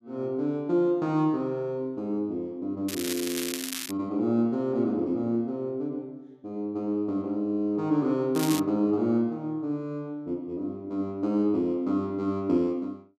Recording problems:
crackle; from 3 to 4 s and at 8.5 s; loose cable, SNR 6 dB

